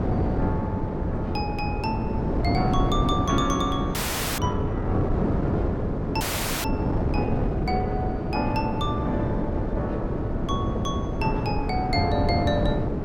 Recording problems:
wind on the microphone; below 370 Hz, SNR -2 dB
frozen audio; at 4 s and at 6 s

